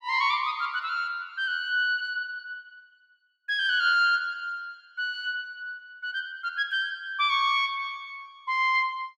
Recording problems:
none

